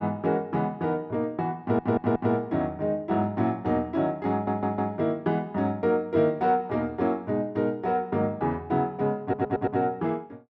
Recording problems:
audio stuttering; at 1.5 s, at 4.5 s and at 9 s

